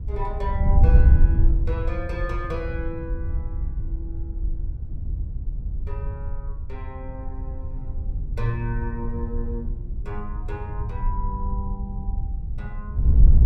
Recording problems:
wind noise; below 72 Hz, SNR -8 dB

